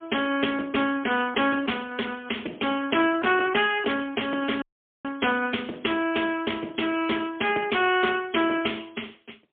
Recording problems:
telephone audio; 240 Hz to 3.4 kHz, AMR-NB, then MP3
dropout; at 4.5 s

